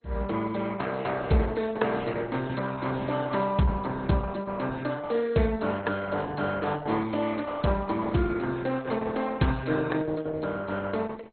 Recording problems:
codec artefacts; Opus, then MP2, log-spectral distance 5 dB, nothing above 4.2 kHz

